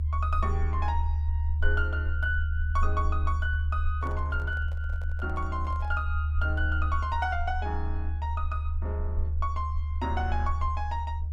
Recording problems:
low-frequency rumble; below 76 Hz, strongest tone 76 Hz, SNR -3 dB
handling noise; from 4 to 6 s; peak -9 dB vs average level

